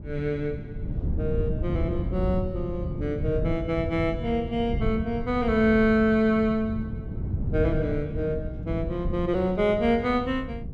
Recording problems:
wind noise; below 160 Hz, SNR 6 dB

